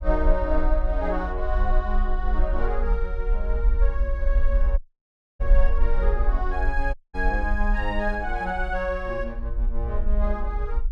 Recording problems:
rumble; below 46 Hz, SNR -2 dB
audio cutting out; at 5 s for 0.5 s and at 7 s

